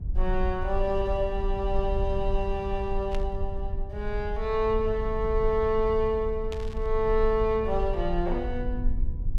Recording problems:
rumble; below 54 Hz, strongest tone 24 Hz, SNR 5 dB
burst of static; at 3 s and at 6.5 s; peak -9 dB vs average level

